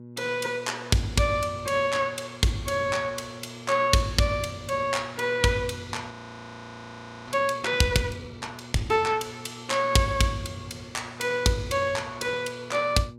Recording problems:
hum; 60 Hz, harmonics up to 600 Hz, SNR 18 dB
frozen audio; at 6 s for 1 s

